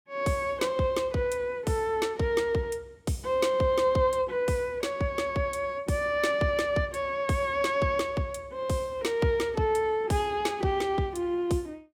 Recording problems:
none

